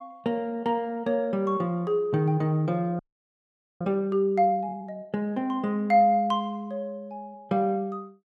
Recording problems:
audio freezing; at 3 s for 1 s

